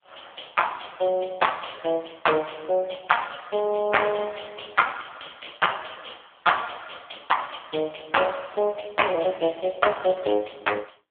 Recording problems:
telephone audio; 260 Hz to 3.5 kHz, AMR-NB

